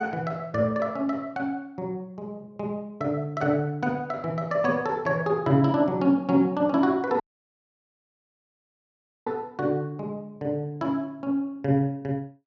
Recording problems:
audio cutting out; at 7 s for 2 s

